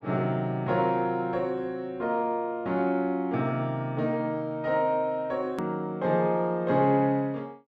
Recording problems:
hard cut with a click; at 5.5 s

